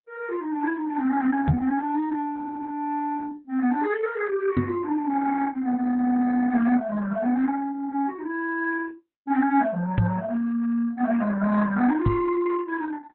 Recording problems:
lossy compression; Opus, log-spectral distance 3 dB, nothing above 4 kHz
microphone bump; 4 times, first at 1.5 s; peak +7 dB vs average level

